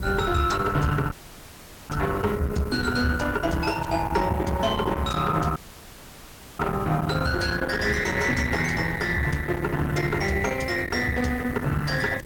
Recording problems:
lossy compression; Opus, log-spectral distance 3 dB, nothing above 17.1 kHz
distortion; soft clipping, signal-to-distortion ratio 11 dB
hiss; slope -3 dB per octave, SNR 22 dB
rumble; below 350 Hz, SNR 7 dB
audio cutting out; at 1 s for 1 s and at 5.5 s for 1 s

